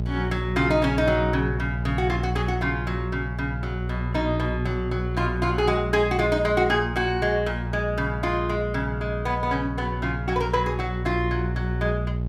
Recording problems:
hum; 60 Hz, harmonics up to 600 Hz, SNR 4 dB

